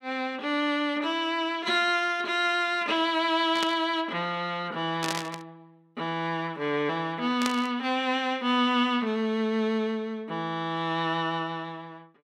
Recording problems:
static burst; at 3.5 s, at 5 s and at 7.5 s; peak +1 dB vs average level

